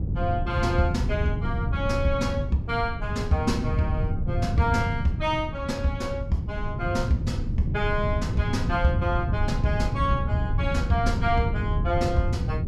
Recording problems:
wind noise; below 130 Hz, SNR 1 dB

